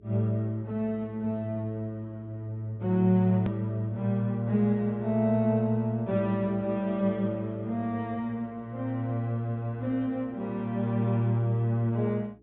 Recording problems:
treble cut off; nothing above 4 kHz
electrical hum; 60 Hz, harmonics up to 420 Hz, SNR 29 dB
edit click; at 3.5 s

